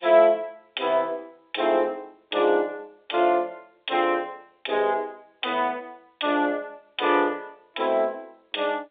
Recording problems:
phone line; 300 Hz to 3.6 kHz, G.711

